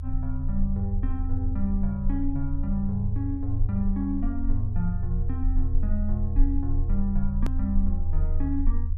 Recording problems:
rumble; below 78 Hz, SNR -1 dB
hard cut with a click; at 7.5 s

